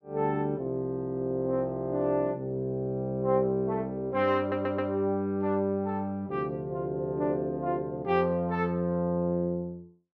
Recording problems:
stutter; at 4.5 s

